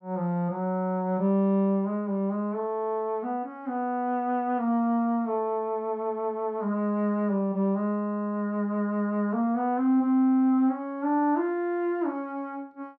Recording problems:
none

